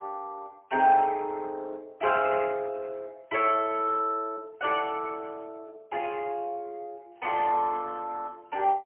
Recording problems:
telephone audio; 280 Hz to 3.2 kHz, AMR-NB, then MP3

